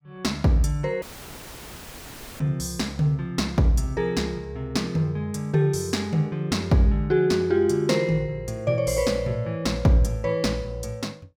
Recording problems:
dropout; at 1 s for 1.5 s; filled with static

